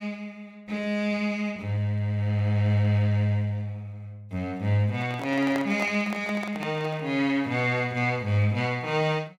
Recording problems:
handling noise; from 5 to 7 s; peak -4 dB vs average level

